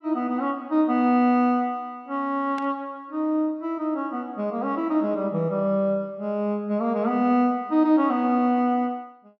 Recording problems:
burst of static; at 2.5 s; peak -13 dB vs average level

